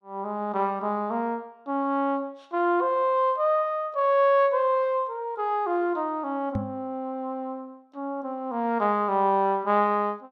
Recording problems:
knock on the microphone; at 6.5 s; peak 0 dB vs average level

